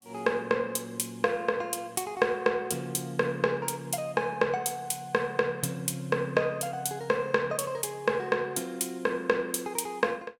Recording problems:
none

